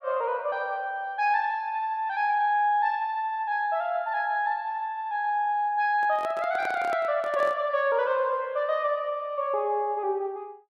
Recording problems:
microphone handling noise; from 6 to 7.5 s; peak -7 dB vs average level

